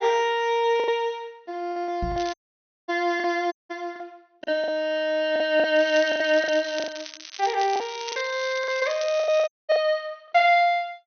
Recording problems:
treble cut off; nothing above 6.3 kHz
packet loss; 10% of the sound replaced, filled with the last packet
microphone bump; at 2 s; peak -4 dB vs average level
crackle; at 2 s and from 6 to 9.5 s; loose cable, SNR 14 dB
dropout; at 2.5 s for 0.5 s, at 3.5 s and at 9.5 s

